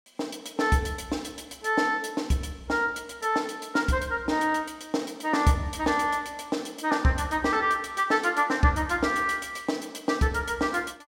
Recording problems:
none

